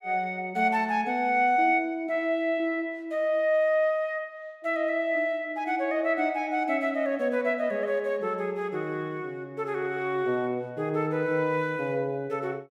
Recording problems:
none

